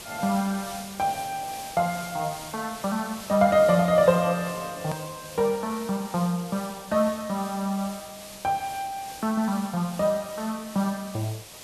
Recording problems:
background hiss; SNR 14 dB
hard cut with a click; at 5 s

